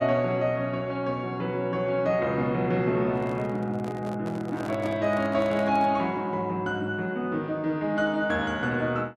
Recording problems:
handling noise; from 3 to 6 s; peak -8 dB vs average level

